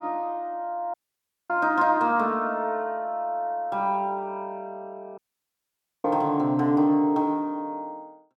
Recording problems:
dropout; at 1 s for 0.5 s and at 5 s for 1 s

